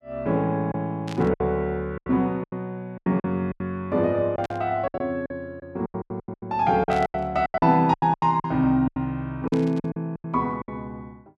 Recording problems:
packet loss; 16% of the sound replaced, filled with silence
static burst; 4 times, first at 1 s; peak -9 dB vs average level

